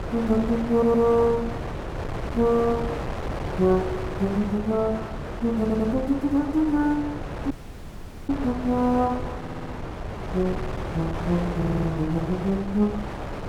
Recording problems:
wind on the microphone; below 740 Hz, SNR 8 dB
audio stuttering; 4 times, first at 0.5 s
dropout; at 7.5 s for 1 s

